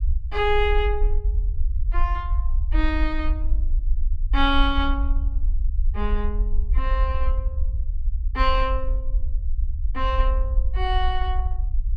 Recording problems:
rumble; below 52 Hz, SNR -1 dB

